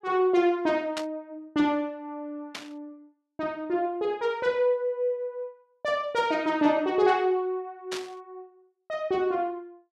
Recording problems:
static burst; at 1 s, at 2.5 s and at 8 s; peak -3 dB vs average level

